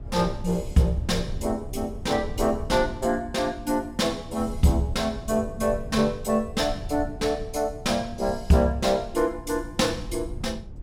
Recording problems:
rumble; below 100 Hz, SNR 13 dB

